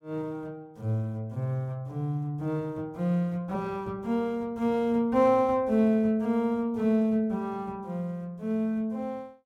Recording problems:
none

